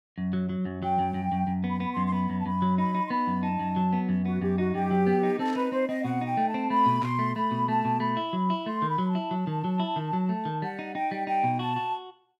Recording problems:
static burst; at 5.5 s and at 7 s; peak -12 dB vs average level

